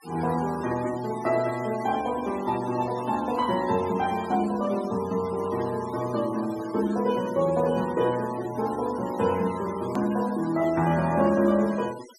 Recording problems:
noise reduction artefacts; signal-to-artefact ratio 17 dB
click at an edit; at 10 s

